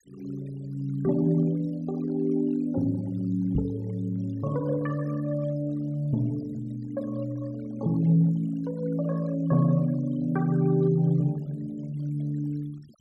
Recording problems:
denoising artefacts; signal-to-artefact ratio 25 dB
knock on the microphone; at 3.5 s; peak +4 dB vs average level

